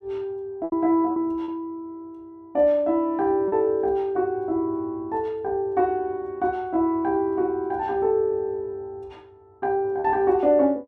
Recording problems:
lost packets; 2% of the sound replaced, filled with repeated pitch periods

